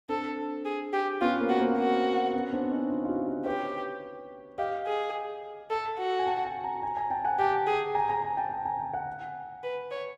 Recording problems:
none

